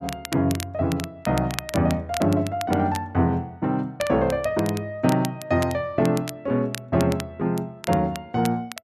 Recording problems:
crackle; vinyl, SNR 13 dB

